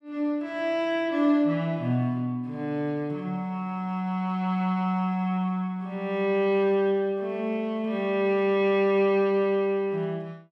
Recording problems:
none

